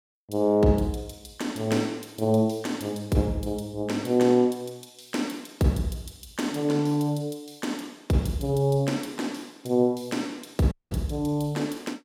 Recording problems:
audio cutting out; at 11 s

